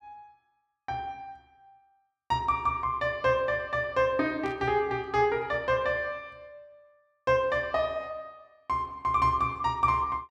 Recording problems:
burst of static; at 4.5 s; peak -14 dB vs average level

